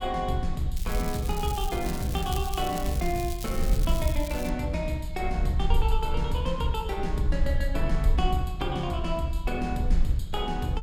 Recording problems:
rumble; below 52 Hz, SNR 3 dB
crackling; from 1 to 4.5 s; loose cable, SNR 10 dB

